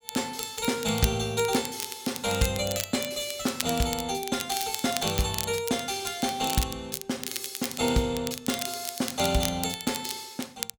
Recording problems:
crackling; vinyl, SNR 7 dB

